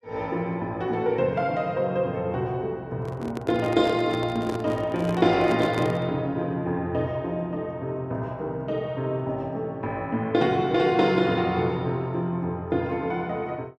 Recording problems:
handling noise; from 3 to 6 s; peak -1 dB vs average level

